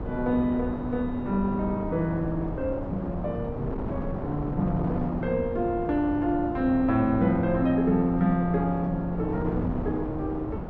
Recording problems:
wind on the microphone; below 450 Hz, SNR 6 dB

